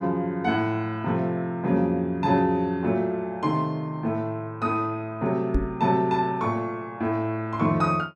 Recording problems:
microphone bump; at 5.5 s; peak +4 dB vs average level

